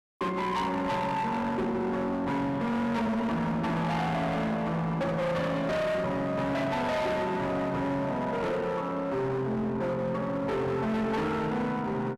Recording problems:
distortion; hard clipping, uneven, signal-to-distortion ratio 6 dB

